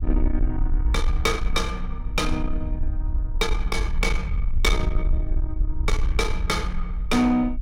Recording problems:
distortion; soft clipping, signal-to-distortion ratio 12 dB
rumble; below 54 Hz, SNR 1 dB

